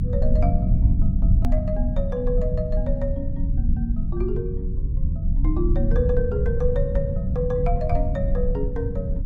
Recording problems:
electrical hum; 60 Hz, harmonics up to 300 Hz, SNR 15 dB
low-frequency rumble; below 88 Hz, SNR -4 dB
edit click; at 1.5 s

